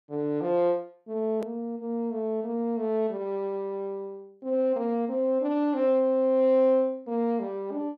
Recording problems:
edit click; at 1.5 s

